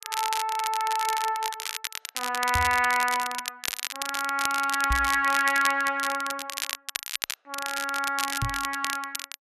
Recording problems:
crackle; vinyl, SNR 6 dB
microphone bump; at 2.5 s, at 5 s and at 8.5 s; peak +1 dB vs average level

